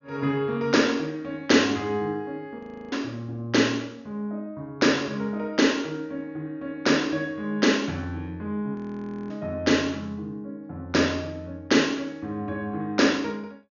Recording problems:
treble cut off; nothing above 6.8 kHz
frozen audio; at 2.5 s and at 9 s for 0.5 s

